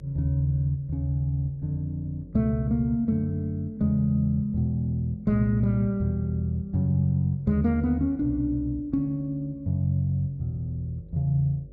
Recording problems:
electrical hum; 50 Hz, harmonics up to 600 Hz, SNR 25 dB

